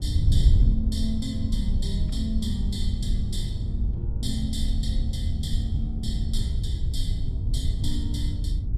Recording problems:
wind noise; below 92 Hz, SNR -7 dB

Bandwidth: 14.5 kHz